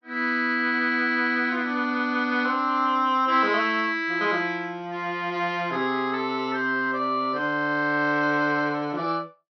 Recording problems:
treble cut off; nothing above 5.9 kHz

